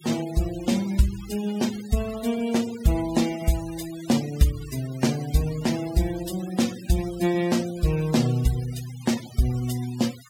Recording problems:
noise reduction artefacts; signal-to-artefact ratio 15 dB

